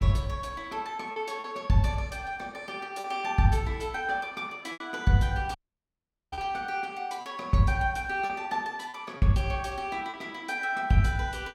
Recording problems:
packet loss; 4% of the sound replaced, filled with repeated pitch periods
dropout; at 5.5 s for 1 s

